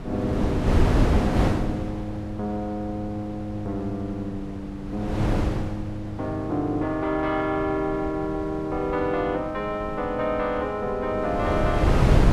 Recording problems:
wind on the microphone; below 360 Hz, SNR 1 dB

